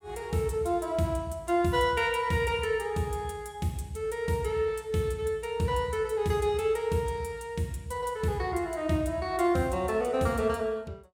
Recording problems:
none

